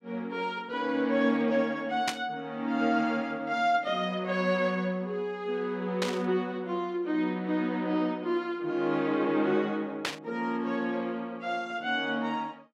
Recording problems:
static burst; at 2 s, at 6 s and at 10 s; peak +4 dB vs average level

